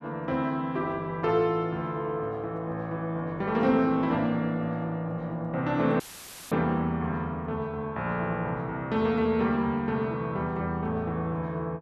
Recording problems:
audio cutting out; at 6 s for 0.5 s; filled with static

